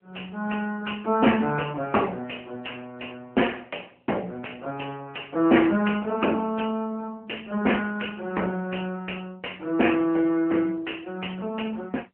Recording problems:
telephone audio; 220 Hz to 3.1 kHz, AMR-NB

